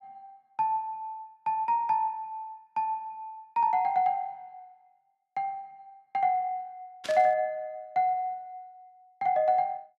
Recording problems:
static burst; at 7 s; peak -5 dB vs average level

